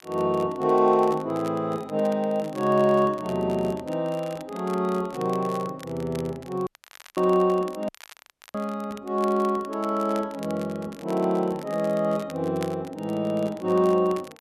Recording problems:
crackle; vinyl, SNR 22 dB
dropout; at 6.5 s for 0.5 s and at 8 s for 0.5 s

